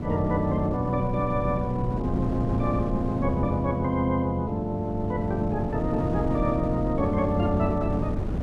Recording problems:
wind noise; below 250 Hz, SNR 5 dB

